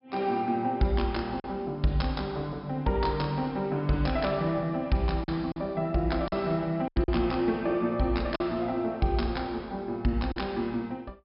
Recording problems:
low-pass filter; nothing above 5.3 kHz
lost packets; 3% of the sound replaced, filled with silence

